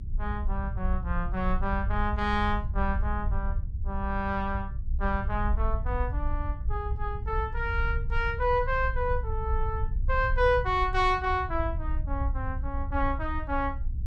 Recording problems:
rumble; below 68 Hz, SNR 2 dB

